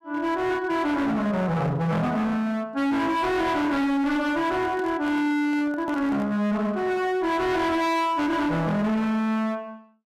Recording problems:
distortion; hard clipping, signal-to-distortion ratio 7 dB
microphone handling noise; from 4.5 to 6.5 s; peak -9 dB vs average level

